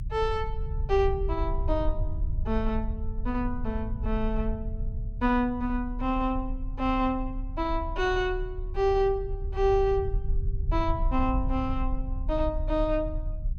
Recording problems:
rumble; below 64 Hz, strongest tone 34 Hz, SNR 5 dB

